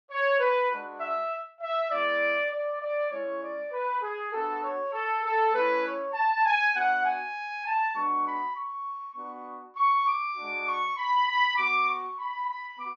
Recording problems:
low-pass filter; nothing above 6.8 kHz

